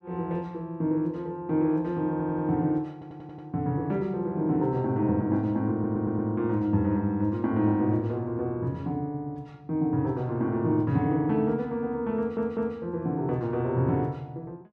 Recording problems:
stutter; 4 times, first at 2 s

